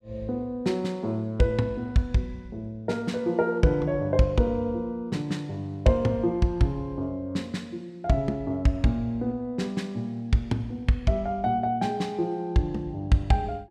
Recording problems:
none

